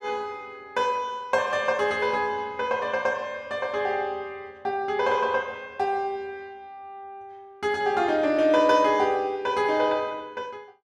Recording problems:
none

